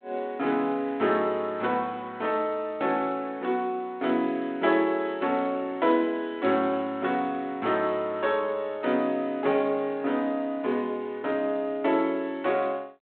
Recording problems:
phone line; 220 Hz to 3.7 kHz, G.726

